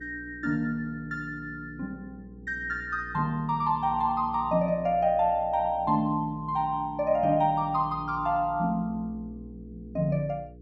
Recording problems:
hum; 60 Hz, harmonics up to 480 Hz, SNR 19 dB

